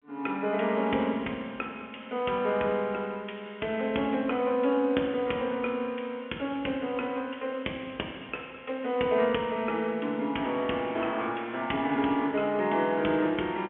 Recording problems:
telephone audio; 220 Hz to 3.4 kHz, G.711

